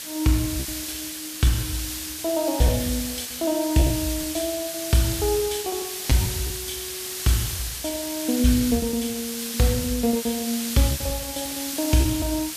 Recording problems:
hiss; slope +2 dB per octave, SNR 5 dB
lost packets; 11% of the sound replaced, filled with repeated pitch periods

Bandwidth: 14.5 kHz